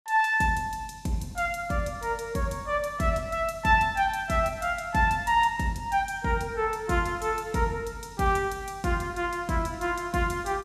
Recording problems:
none

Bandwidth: 14 kHz